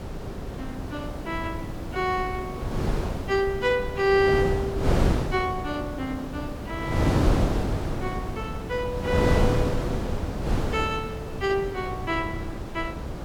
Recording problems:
background hiss; slope +3 dB per octave, SNR 28 dB
wind noise; below 420 Hz, SNR 1 dB

